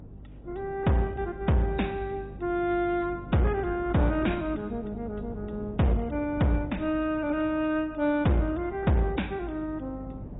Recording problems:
lossy compression; AAC, log-spectral distance 3 dB, nothing above 3.8 kHz
distortion; hard clipping, uneven, signal-to-distortion ratio 10 dB
hum; 50 Hz, harmonics up to 300 Hz, SNR 18 dB
wind on the microphone; below 320 Hz, SNR 18 dB

